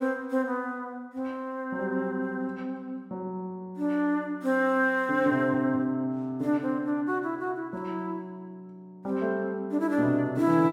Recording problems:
none

